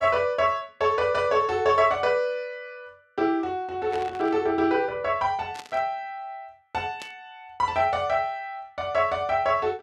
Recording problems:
burst of static; at 4 s, at 5.5 s and at 7 s; peak -10 dB vs average level

